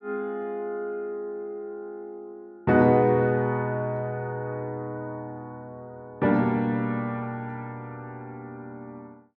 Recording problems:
none

